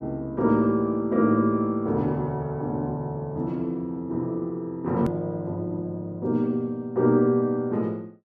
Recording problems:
hard cut with a click; at 5 s

